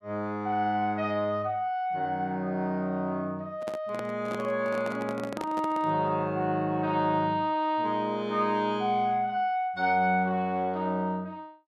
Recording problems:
microphone handling noise; from 3.5 to 6 s; peak -4 dB vs average level

